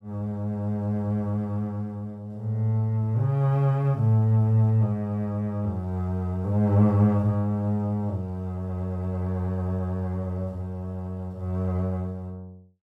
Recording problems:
none

